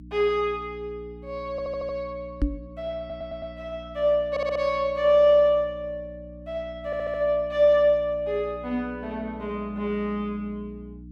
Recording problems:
mains hum; 60 Hz, harmonics up to 300 Hz, SNR 19 dB
stutter; 4 times, first at 1.5 s
knock on the microphone; at 2.5 s; peak +4 dB vs average level

